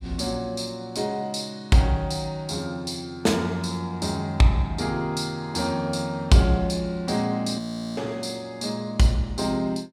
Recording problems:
frozen audio; at 7.5 s

